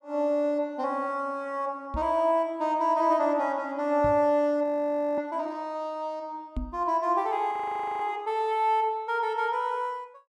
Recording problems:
microphone bump; at 2 s, at 4 s and at 6.5 s; peak -2 dB vs average level
frozen audio; at 4.5 s for 0.5 s and at 7.5 s

